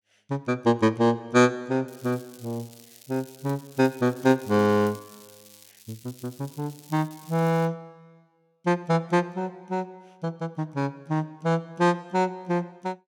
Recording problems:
crackle; from 2 to 7.5 s; loose cable, SNR 23 dB

